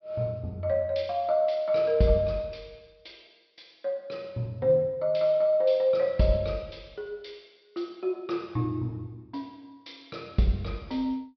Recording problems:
treble missing; nothing above 5.5 kHz

